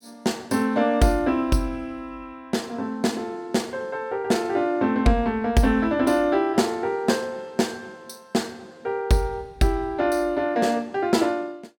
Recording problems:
none

